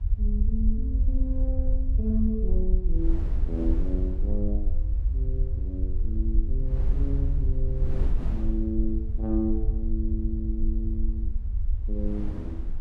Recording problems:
low-frequency rumble; below 60 Hz, SNR -5 dB
wind noise; below 150 Hz, SNR 7 dB

